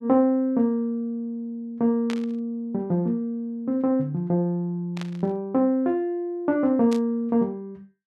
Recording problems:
burst of static; at 2 s, at 5 s and at 7 s; peak -6 dB vs average level

